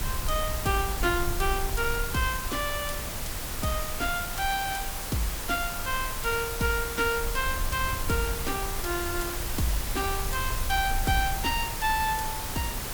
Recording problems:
hiss; slope -2 dB per octave, SNR 3 dB
rumble; below 68 Hz, SNR 8 dB
wind noise; below 390 Hz, SNR 17 dB

